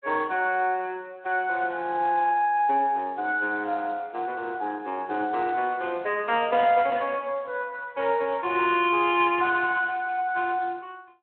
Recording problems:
phone line; 240 Hz to 3.3 kHz, Speex

